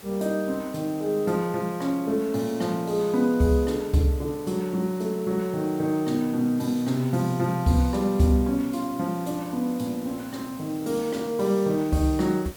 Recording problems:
hiss; slope -4 dB per octave, SNR 19 dB

